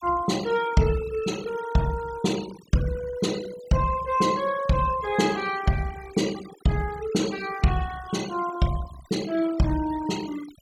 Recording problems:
noise reduction artefacts; signal-to-artefact ratio 16 dB

